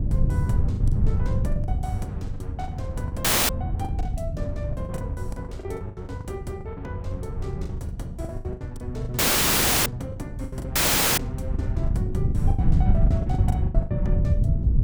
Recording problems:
wind noise; below 120 Hz, SNR -8 dB
packet loss; 16% of the sound replaced, filled with the last packet
audio cutting out; at 3 s, at 9 s for 0.5 s and at 11 s

